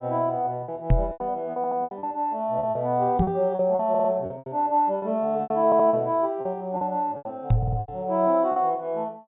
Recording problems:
treble missing; nothing above 4 kHz
packet loss; 12% of the sound replaced, filled with repeated pitch periods
microphone bump; at 1 s, at 3 s and at 7.5 s; peak +7 dB vs average level
stutter; 4 times, first at 1.5 s

